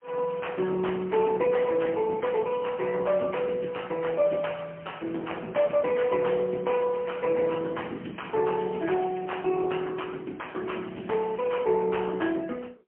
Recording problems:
telephone audio; 240 Hz to 3.1 kHz, AMR-NB, then MP3

